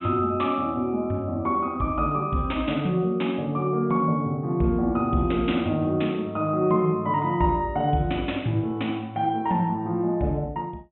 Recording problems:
treble cut off; nothing above 3.6 kHz

